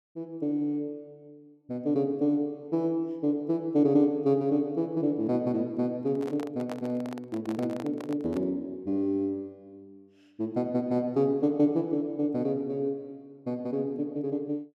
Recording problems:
handling noise; from 6 to 8.5 s; peak -6 dB vs average level

